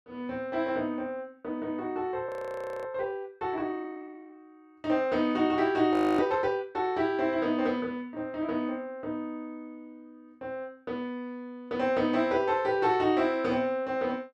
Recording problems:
audio freezing; at 2.5 s for 0.5 s and at 6 s

